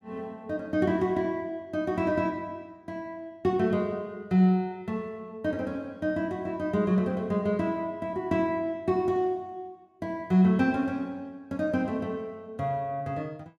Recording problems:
none

